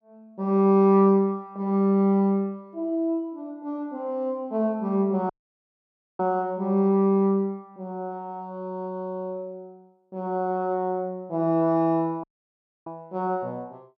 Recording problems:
audio cutting out; at 5.5 s for 1 s and at 12 s for 0.5 s

